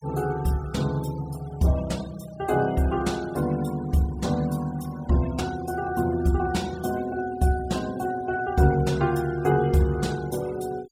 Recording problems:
denoising artefacts; signal-to-artefact ratio 20 dB

